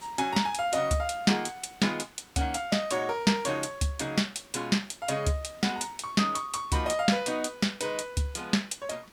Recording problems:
background hiss; SNR 24 dB

